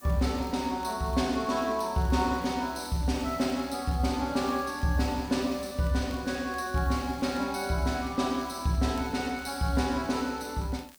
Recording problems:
hiss; SNR 24 dB
crackling; vinyl, SNR 27 dB

